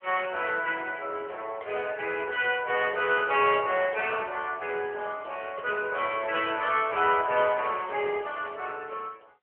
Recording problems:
phone line; 340 Hz to 3.2 kHz, AMR-NB

